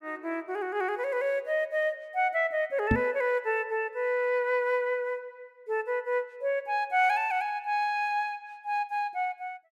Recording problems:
microphone bump; at 3 s; peak +6 dB vs average level

